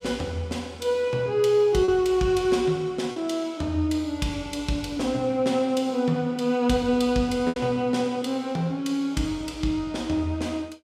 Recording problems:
lost packets; 1.5% of the sound replaced, filled with repeated pitch periods

